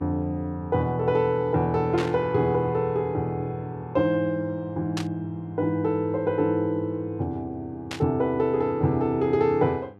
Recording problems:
electrical hum; 50 Hz, harmonics up to 1.6 kHz, SNR 25 dB
burst of static; at 2 s, at 5 s and at 8 s; peak -3 dB vs average level

